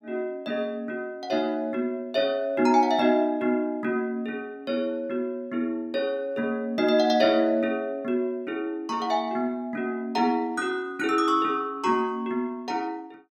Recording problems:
none

